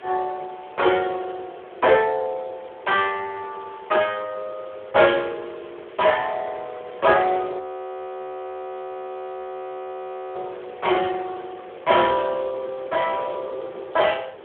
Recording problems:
phone line; 320 Hz to 3.5 kHz, Speex
hiss; SNR 25 dB
wind noise; below 560 Hz, SNR 20 dB
frozen audio; at 7.5 s for 3 s

